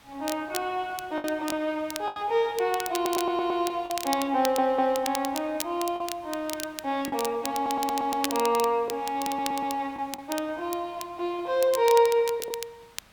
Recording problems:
hiss; SNR 26 dB
crackle; vinyl, SNR 11 dB
lost packets; 4% of the sound replaced, filled with the last packet
stutter; 4 times, first at 3 s

